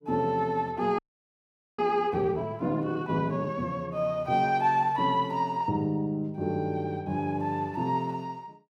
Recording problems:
frozen audio; at 1 s for 1 s

